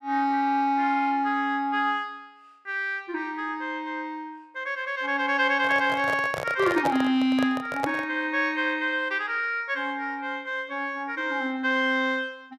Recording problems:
handling noise; from 5.5 to 8 s; peak +1 dB vs average level

